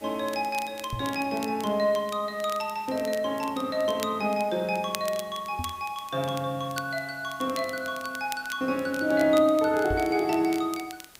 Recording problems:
hiss; slope -2 dB per octave, SNR 24 dB
crackle; vinyl, SNR 16 dB
microphone thump; at 1 s, at 5.5 s and at 10 s; peak -2 dB vs average level

